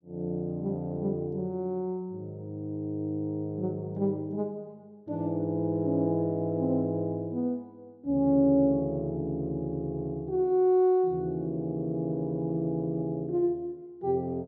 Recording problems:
low-pass filter; nothing above 6.7 kHz

